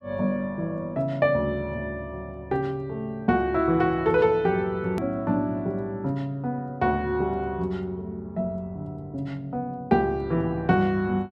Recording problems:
edit click; at 5 s

